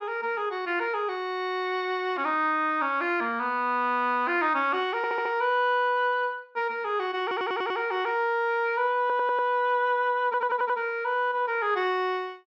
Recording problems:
treble cut off; nothing above 8 kHz
stutter; 4 times, first at 5 s

